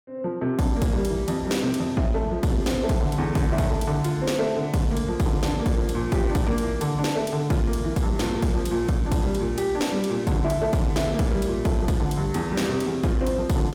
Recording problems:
distorted audio; soft clipping, signal-to-distortion ratio 12 dB

